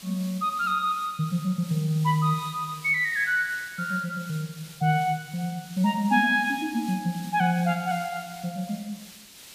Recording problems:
background hiss; SNR 18 dB

